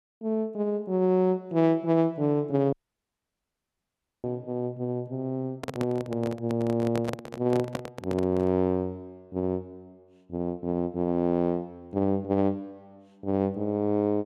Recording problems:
dropout; at 2.5 s for 1.5 s
microphone handling noise; from 5.5 to 8.5 s; peak 0 dB vs average level

